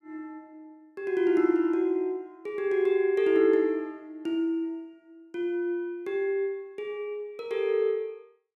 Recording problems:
none

